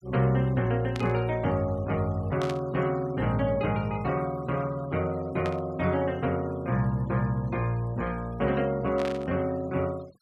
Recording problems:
denoising artefacts; signal-to-artefact ratio 24 dB
burst of static; 4 times, first at 1 s; peak -6 dB vs average level

